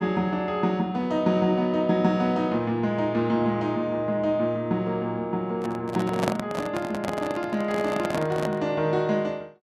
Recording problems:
handling noise; from 5.5 to 8.5 s; peak +3 dB vs average level

